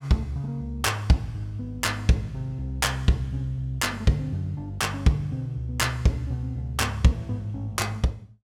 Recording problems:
none

